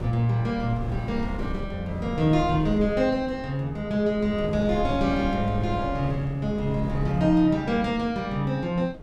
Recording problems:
wind on the microphone; below 240 Hz, SNR 10 dB

